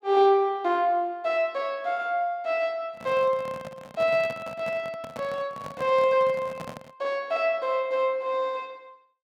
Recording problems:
microphone handling noise; from 3 to 7 s; peak -7 dB vs average level

